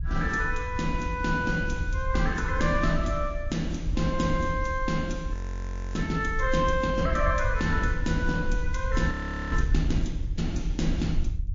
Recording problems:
codec artefacts; MP3, log-spectral distance 2 dB
wind noise; below 70 Hz, SNR 4 dB
frozen audio; at 5.5 s for 0.5 s and at 9 s

